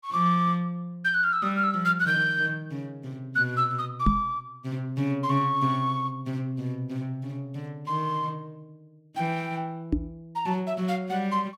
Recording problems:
microphone bump; at 4 s and at 10 s; peak +7 dB vs average level

